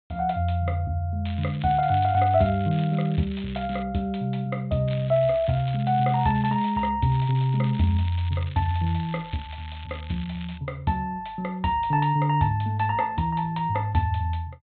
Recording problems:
treble cut off; nothing above 4 kHz
crackling; from 1.5 to 4 s, from 5 to 7 s and from 7 to 11 s; loose cable, SNR 20 dB

